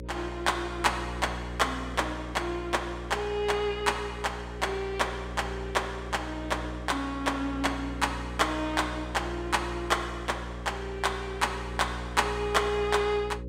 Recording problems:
hum; 60 Hz, harmonics up to 540 Hz, SNR 9 dB

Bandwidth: 16.5 kHz